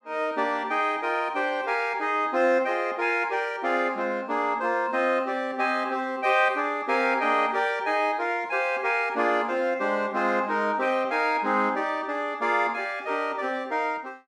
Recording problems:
none

